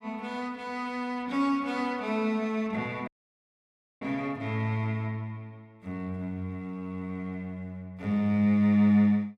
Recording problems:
dropout; at 3 s for 1 s

